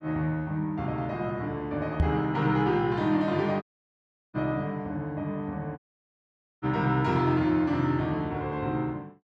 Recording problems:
microphone thump; at 2 s; peak +6 dB vs average level
audio cutting out; at 3.5 s for 0.5 s and at 6 s for 1 s

